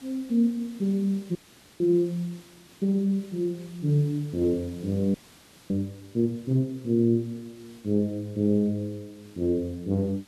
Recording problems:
background hiss; SNR 25 dB
audio freezing; at 1.5 s and at 5 s for 0.5 s

